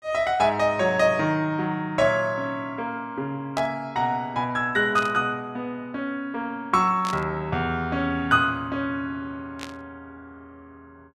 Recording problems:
static burst; 4 times, first at 3.5 s; peak -6 dB vs average level

